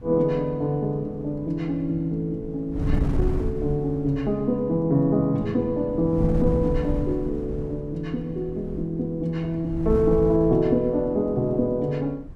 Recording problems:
wind on the microphone; below 130 Hz, SNR 9 dB

